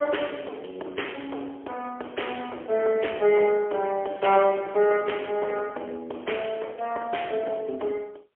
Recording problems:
phone line; 320 Hz to 3.3 kHz, AMR-NB, then MP3

